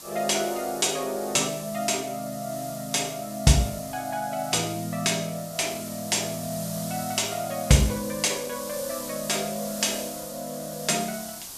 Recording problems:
hiss; SNR 11 dB

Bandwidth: 14.5 kHz